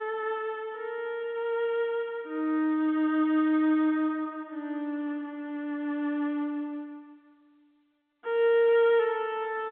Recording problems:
telephone audio; 220 Hz to 3.4 kHz, G.711

